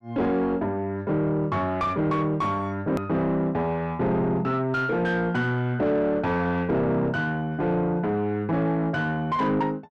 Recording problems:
distorted audio; soft clipping, signal-to-distortion ratio 10 dB
hard cut with a click; at 3 s

